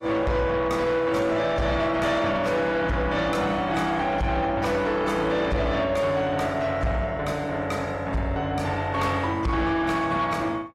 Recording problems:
lossy compression; AAC, log-spectral distance 2 dB, nothing above 15.5 kHz
distortion; soft clipping, signal-to-distortion ratio 11 dB

